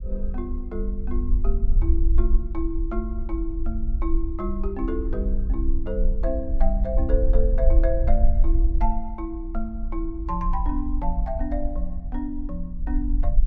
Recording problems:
low-frequency rumble; below 48 Hz, strongest tone 24 Hz, SNR -4 dB

